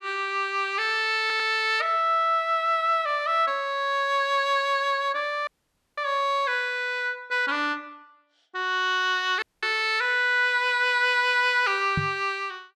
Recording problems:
stutter; at 1 s
audio cutting out; at 5.5 s for 0.5 s and at 9.5 s
knock on the microphone; at 12 s; peak 0 dB vs average level

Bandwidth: 13 kHz